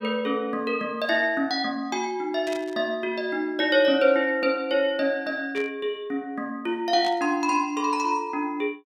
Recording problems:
static burst; at 2.5 s, at 5.5 s and at 7 s; peak -10 dB vs average level

